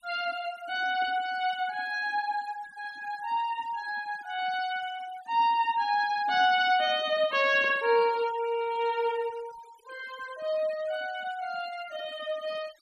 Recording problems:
denoising artefacts; signal-to-artefact ratio 19 dB

